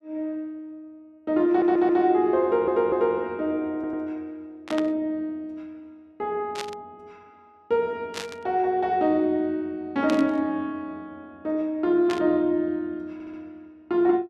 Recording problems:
audio stuttering; 4 times, first at 1.5 s
burst of static; 5 times, first at 4.5 s; peak -4 dB vs average level

